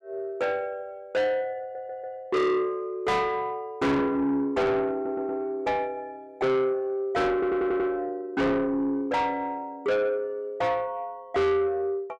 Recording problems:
distorted audio; soft clipping, signal-to-distortion ratio 6 dB
stutter; at 1.5 s, at 5 s and at 7.5 s

